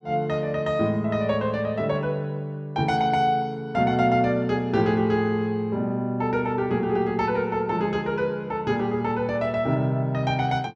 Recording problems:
none

